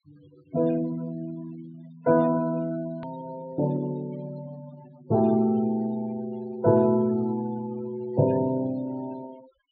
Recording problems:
treble cut off; nothing above 4.6 kHz
noise reduction artefacts; signal-to-artefact ratio 22 dB
click at an edit; at 3 s

